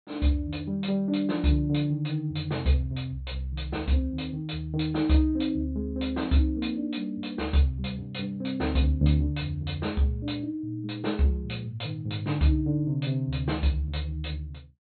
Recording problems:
treble missing; nothing above 4.3 kHz

